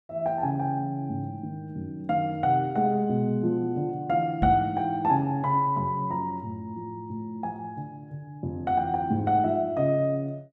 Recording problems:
knock on the microphone; at 4.5 s; peak +3 dB vs average level

